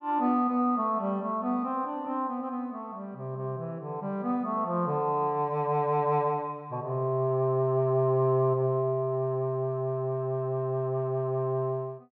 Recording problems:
none

